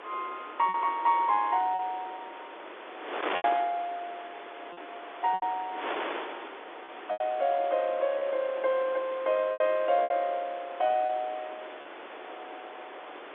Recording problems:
phone line; 280 Hz to 3.8 kHz, G.711
wind on the microphone; below 2 kHz, SNR 11 dB
lost packets; 6% of the sound replaced, filled with repeated pitch periods

